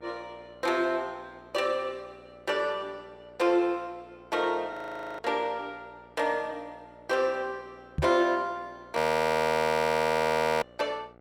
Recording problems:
electrical hum; 60 Hz, harmonics up to 2.3 kHz, SNR 27 dB
audio freezing; at 4.5 s and at 9 s for 1.5 s
knock on the microphone; at 8 s; peak +2 dB vs average level

